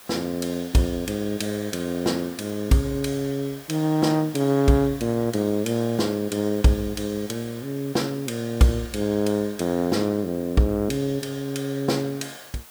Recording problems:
hiss; SNR 20 dB

